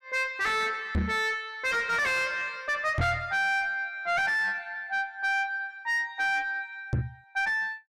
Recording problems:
distorted audio; soft clipping, signal-to-distortion ratio 7 dB
microphone bump; at 1 s, at 3 s and at 7 s; peak +5 dB vs average level

